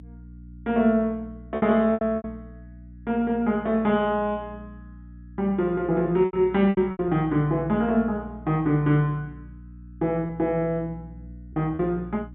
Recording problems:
treble cut off; nothing above 3.7 kHz
hum; 60 Hz, harmonics up to 300 Hz, SNR 19 dB
lost packets; 6% of the sound replaced, filled with repeated pitch periods

